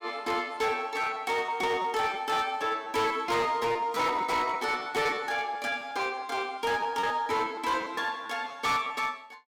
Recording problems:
distorted audio; hard clipping, signal-to-distortion ratio 11 dB
lost packets; 11% of the sound replaced, filled with repeated pitch periods

